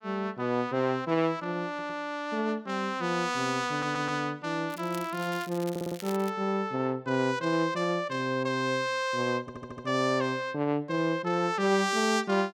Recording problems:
stutter; 4 times, first at 1.5 s
crackle; from 4.5 to 6.5 s; loose cable, SNR 17 dB

